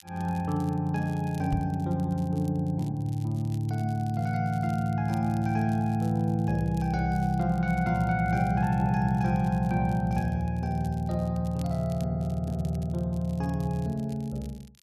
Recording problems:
crackling; vinyl, SNR 27 dB
knock on the microphone; at 1.5 s; peak +2 dB vs average level

